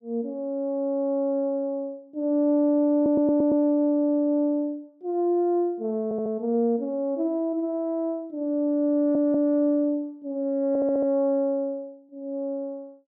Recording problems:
audio stuttering; 4 times, first at 3 s

